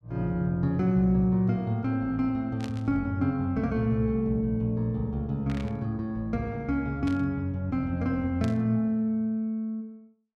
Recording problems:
burst of static; 4 times, first at 2.5 s; peak -10 dB vs average level

